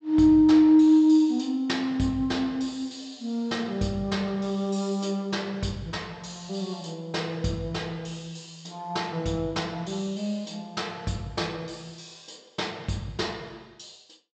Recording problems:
treble missing; nothing above 8 kHz

